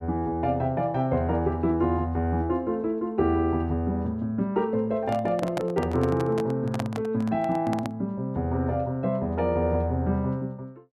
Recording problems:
microphone handling noise; from 5 to 8 s; peak -1 dB vs average level

